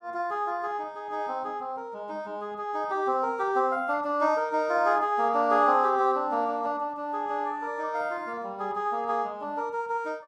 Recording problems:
none

